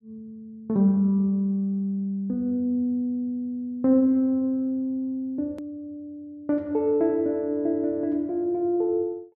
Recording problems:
edit click; at 5.5 s

